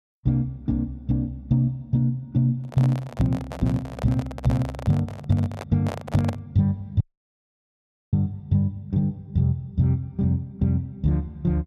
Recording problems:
handling noise; from 2.5 to 6.5 s; peak -4 dB vs average level
audio cutting out; at 7 s for 1 s

